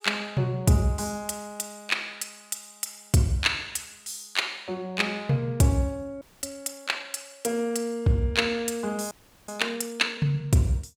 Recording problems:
frozen audio; at 6 s and at 9 s

